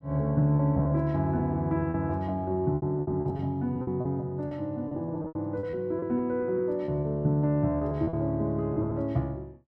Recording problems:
lost packets; 11% of the sound replaced, filled with repeated pitch periods

